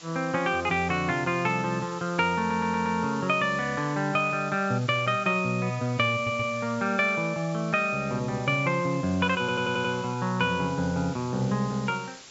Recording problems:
treble cut off; nothing above 8 kHz
background hiss; slope 0 dB per octave, SNR 19 dB
audio stuttering; at 2.5 s, at 6 s and at 9.5 s

